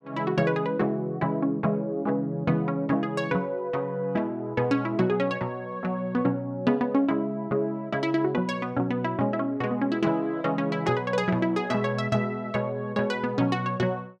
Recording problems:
none

